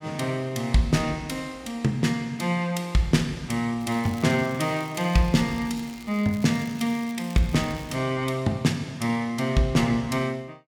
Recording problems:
crackle; from 4 to 8 s; loose cable, SNR 22 dB

